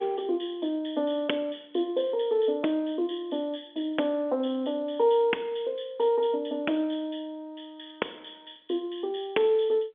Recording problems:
phone line; 260 Hz to 3.5 kHz, G.711

